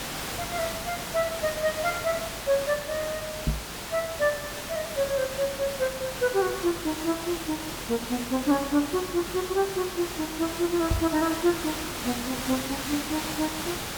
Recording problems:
hum; 50 Hz, harmonics up to 600 Hz, SNR 22 dB
hiss; slope -2 dB per octave, SNR 5 dB
knock on the microphone; at 3.5 s and at 11 s; peak +5 dB vs average level

